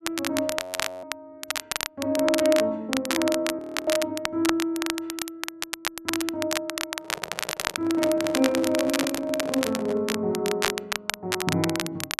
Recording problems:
crackle; vinyl, SNR 4 dB
audio freezing; at 0.5 s and at 3.5 s
handling noise; from 7 to 10 s; peak -2 dB vs average level

